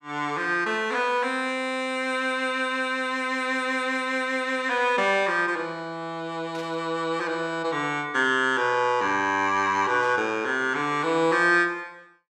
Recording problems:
burst of static; at 6.5 s and at 10 s; peak -14 dB vs average level

